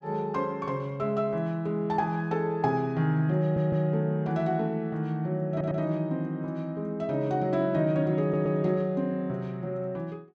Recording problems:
stutter; at 3.5 s, at 5.5 s and at 8 s

